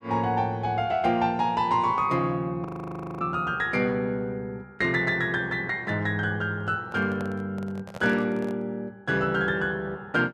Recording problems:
frozen audio; at 2.5 s for 0.5 s
microphone handling noise; from 6.5 to 8.5 s; peak -8 dB vs average level

